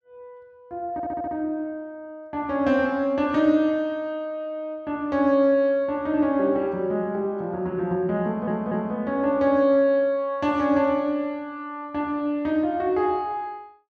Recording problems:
audio stuttering; at 1 s and at 8 s

